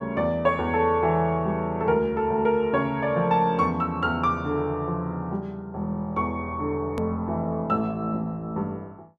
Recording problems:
edit click; at 7 s

